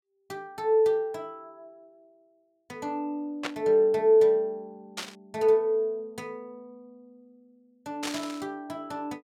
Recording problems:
static burst; at 3.5 s, at 5 s and at 8 s; peak -2 dB vs average level

